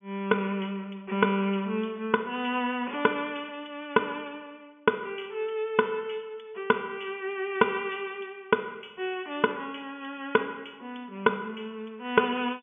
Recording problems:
treble cut off; nothing above 3.5 kHz

